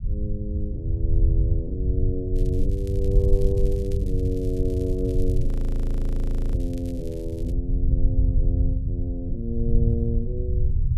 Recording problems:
low-frequency rumble; below 86 Hz, SNR -5 dB
crackling; from 2.5 to 7.5 s; loose cable, SNR 22 dB
audio freezing; at 5.5 s for 1 s

